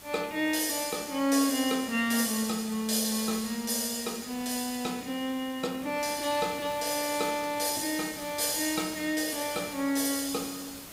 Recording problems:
hiss; slope -2 dB per octave, SNR 16 dB

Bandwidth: 15.5 kHz